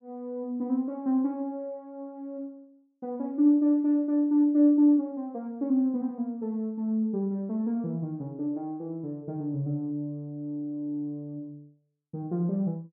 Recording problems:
none

